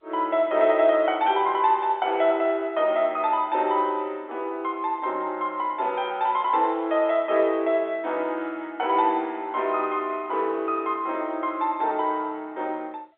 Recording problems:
phone line; 280 Hz to 3.8 kHz, G.711

